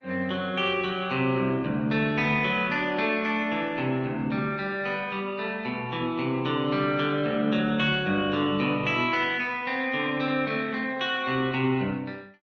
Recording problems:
lossy codec; Opus, log-spectral distance 3 dB

